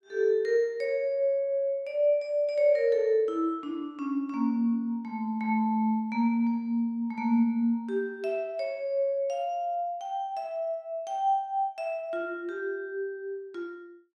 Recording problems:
none

